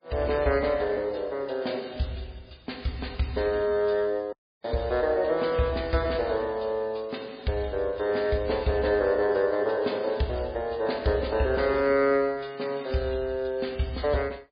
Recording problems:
lossy compression; MP3, log-spectral distance 4 dB, nothing above 4.5 kHz
audio cutting out; at 4.5 s

